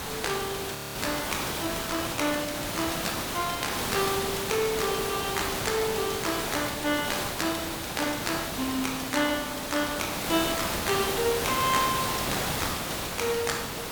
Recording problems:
background hiss; slope -3 dB per octave, SNR 1 dB
frozen audio; at 1 s

